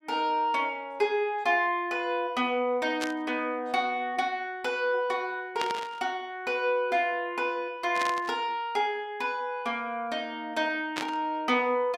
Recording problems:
burst of static; 4 times, first at 3 s; peak 0 dB vs average level

